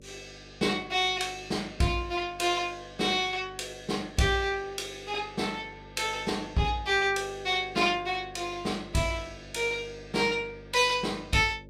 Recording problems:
hum; 50 Hz, harmonics up to 600 Hz, SNR 22 dB

